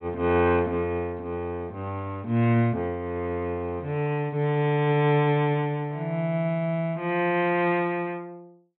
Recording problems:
treble missing; nothing above 4 kHz

